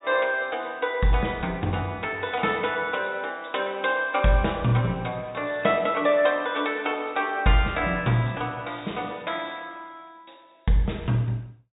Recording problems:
treble cut off; nothing above 4 kHz

